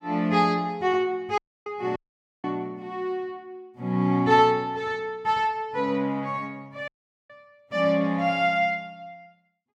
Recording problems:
audio cutting out; at 1.5 s, at 2 s and at 7 s

